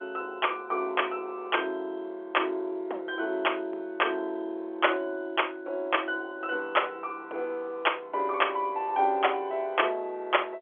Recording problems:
phone line; 320 Hz to 3.4 kHz, G.711

